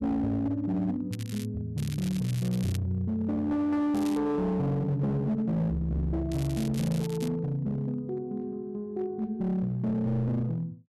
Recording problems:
distorted audio; hard clipping, uneven, signal-to-distortion ratio 11 dB
crackling; 4 times, first at 1 s; loose cable, SNR 16 dB

